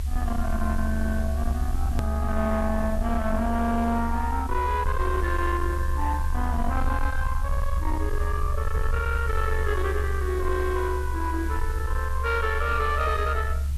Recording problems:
distorted audio; soft clipping, signal-to-distortion ratio 11 dB
hiss; slope 0 dB per octave, SNR 20 dB
rumble; below 72 Hz, SNR 1 dB
click at an edit; at 2 s

